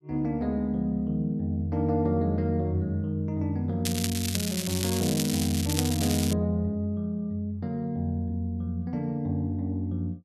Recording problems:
crackling; from 4 to 6.5 s; loose cable, SNR 4 dB

